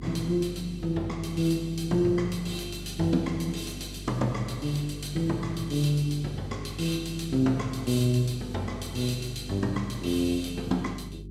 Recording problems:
electrical hum; 50 Hz, harmonics up to 400 Hz, SNR 13 dB

